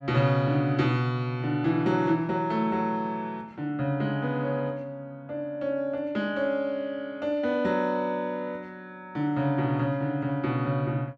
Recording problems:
none

